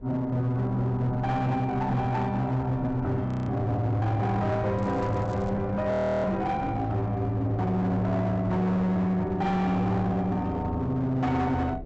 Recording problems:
low-pass filter; nothing above 7.9 kHz
distorted audio; hard clipping, uneven, signal-to-distortion ratio 10 dB
wind noise; below 250 Hz, SNR 17 dB
audio freezing; at 3.5 s and at 6 s
crackle; at 5 s; loose cable, SNR 29 dB

